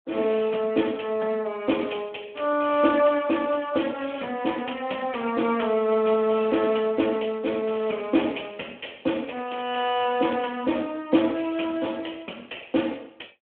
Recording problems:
phone line; 190 Hz to 3.3 kHz, Speex

